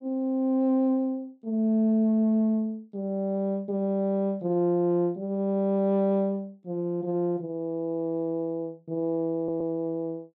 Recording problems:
stutter; at 9.5 s

